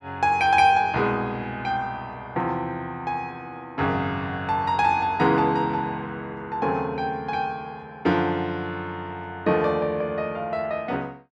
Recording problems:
none

